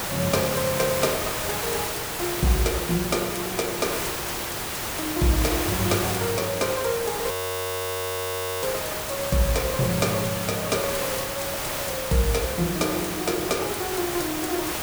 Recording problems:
hiss; slope -3 dB per octave, SNR 1 dB
audio freezing; at 7.5 s for 1.5 s

